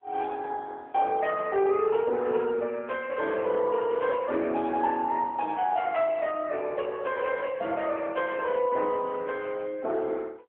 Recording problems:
phone line; 280 Hz to 3.3 kHz, AMR-NB

